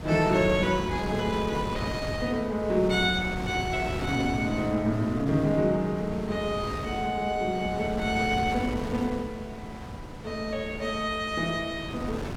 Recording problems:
wind noise; below 640 Hz, SNR 8 dB

